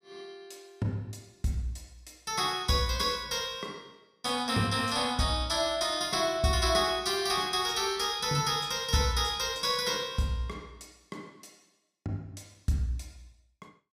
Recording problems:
none

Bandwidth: 14.5 kHz